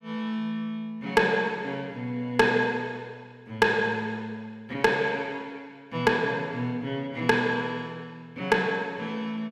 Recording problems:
distortion; hard clipping, signal-to-distortion ratio 12 dB

